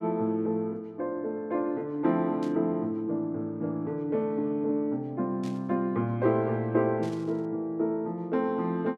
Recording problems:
static burst; at 2.5 s, at 5.5 s and at 7 s; peak -14 dB vs average level

